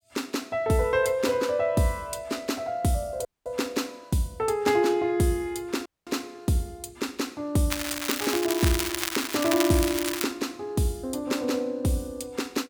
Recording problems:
dropout; at 3.5 s and at 6 s
crackling; from 7.5 to 10 s; loose cable, SNR 3 dB

